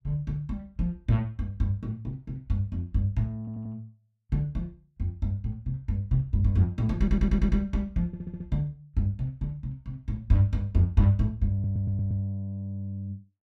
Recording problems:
stutter; 4 times, first at 3.5 s

